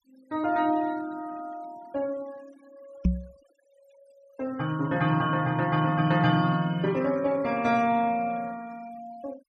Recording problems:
denoising artefacts; signal-to-artefact ratio 23 dB
knock on the microphone; at 3 s; peak +6 dB vs average level

